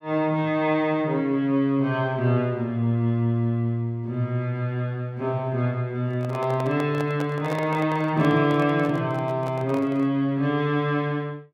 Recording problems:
microphone handling noise; from 6 to 10 s; peak -5 dB vs average level

